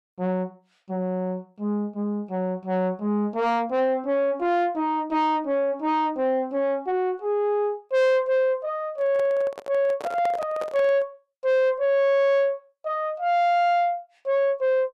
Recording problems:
distorted audio; soft clipping, signal-to-distortion ratio 11 dB
microphone handling noise; from 9 to 11 s; peak -5 dB vs average level

